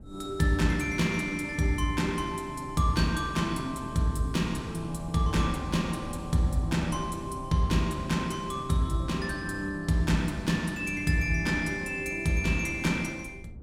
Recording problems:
wind noise; below 180 Hz, SNR 17 dB

